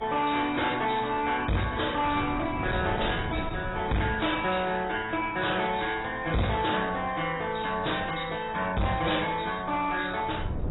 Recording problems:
lossy codec; MP2, then AAC, log-spectral distance 7 dB, nothing above 3.8 kHz
distorted audio; hard clipping, uneven, signal-to-distortion ratio 7 dB
wind on the microphone; below 330 Hz, SNR 13 dB

